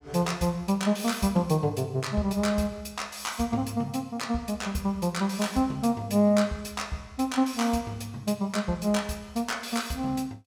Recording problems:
none

